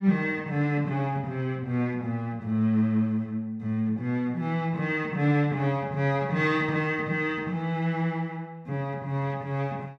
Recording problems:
none

